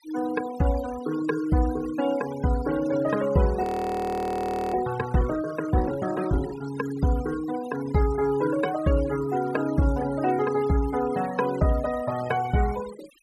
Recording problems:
denoising artefacts; signal-to-artefact ratio 16 dB
audio freezing; at 3.5 s for 1 s

